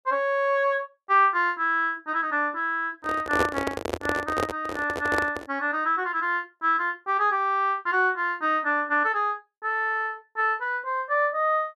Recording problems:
microphone handling noise; from 3 to 5.5 s; peak +4 dB vs average level

